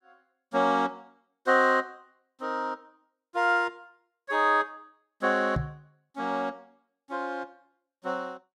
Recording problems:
microphone thump; at 5.5 s; peak +2 dB vs average level

